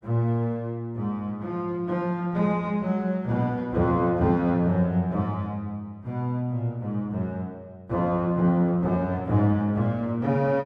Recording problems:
none

